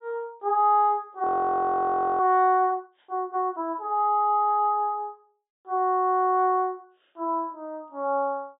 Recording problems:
low-pass filter; nothing above 4 kHz
audio freezing; at 1 s for 1 s

